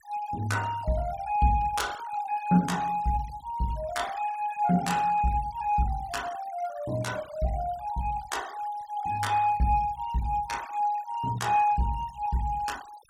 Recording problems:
noise reduction artefacts; signal-to-artefact ratio 20 dB

